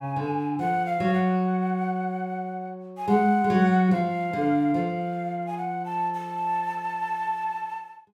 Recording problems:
none

